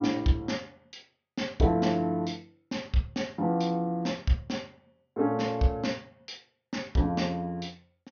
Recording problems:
treble missing; nothing above 6.3 kHz

